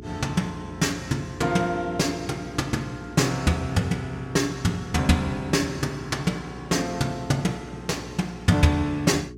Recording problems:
hum; 60 Hz, harmonics up to 420 Hz, SNR 16 dB

